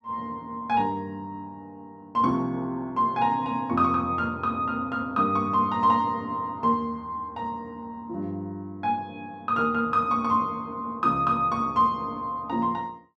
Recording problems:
none

